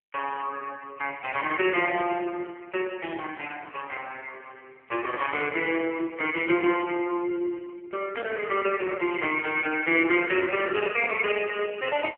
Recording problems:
phone line; 300 Hz to 2.8 kHz, AMR-NB

